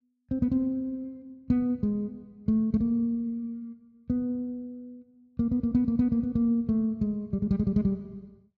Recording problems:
none

